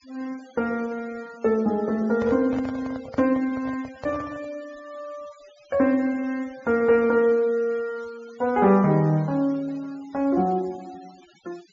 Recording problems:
low-pass filter; nothing above 7.3 kHz
denoising artefacts; signal-to-artefact ratio 25 dB
microphone handling noise; from 2 to 4.5 s; peak -8 dB vs average level

